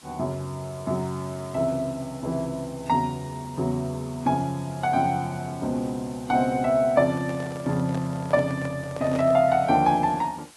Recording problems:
lossy compression; AAC, log-spectral distance 5 dB
hiss; slope 0 dB per octave, SNR 23 dB
microphone handling noise; from 7 to 9.5 s; peak -5 dB vs average level

